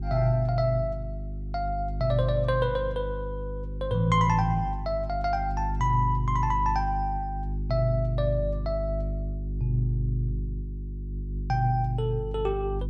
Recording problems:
hum; 50 Hz, harmonics up to 400 Hz, SNR 5 dB

